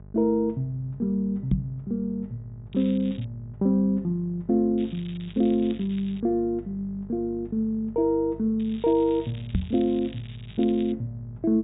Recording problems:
low-pass filter; nothing above 4 kHz
electrical hum; 50 Hz, harmonics up to 650 Hz, SNR 19 dB
microphone bump; at 1.5 s and at 9.5 s; peak +5 dB vs average level
crackle; at 2.5 s, from 5 to 6 s and from 8.5 to 11 s; loose cable, SNR 22 dB

